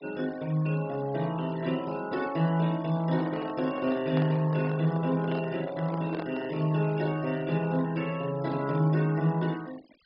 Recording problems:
treble cut off; nothing above 5.5 kHz
noise reduction artefacts; signal-to-artefact ratio 21 dB
handling noise; from 3 to 6.5 s; peak -4 dB vs average level

